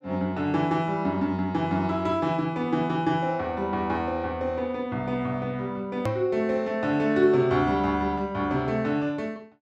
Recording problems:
edit click; at 6 s

